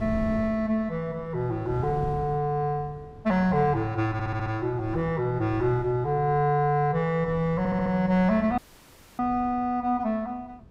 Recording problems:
wind on the microphone; below 210 Hz, SNR 16 dB
audio stuttering; at 4 s and at 7.5 s
dropout; at 8.5 s for 0.5 s

